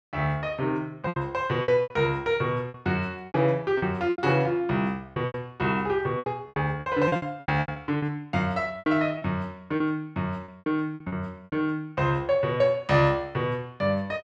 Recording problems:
lost packets; 12% of the sound replaced, filled with repeated pitch periods

